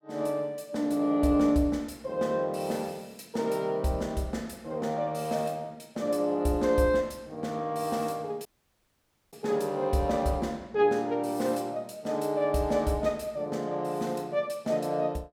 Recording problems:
dropout; at 8.5 s for 1 s

